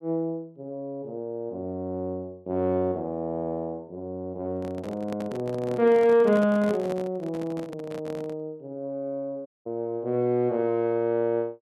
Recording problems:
microphone handling noise; from 4.5 to 8.5 s; peak -4 dB vs average level
dropout; at 9.5 s

